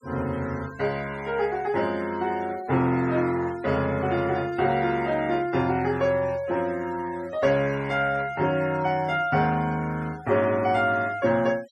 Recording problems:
denoising artefacts; signal-to-artefact ratio 22 dB

